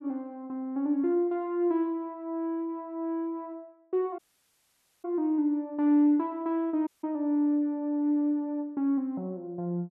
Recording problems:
dropout; at 4 s for 1 s and at 7 s

